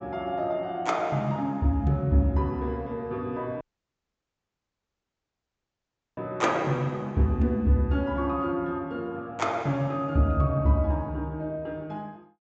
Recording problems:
low-pass filter; nothing above 8 kHz
dropout; at 3.5 s for 2.5 s

